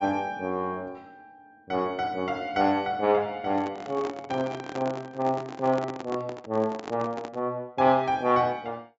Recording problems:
treble missing; nothing above 8 kHz
microphone handling noise; from 3.5 to 7.5 s; peak -5 dB vs average level

